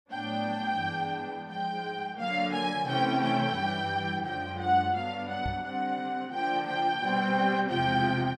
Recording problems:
knock on the microphone; at 5.5 s; peak -3 dB vs average level

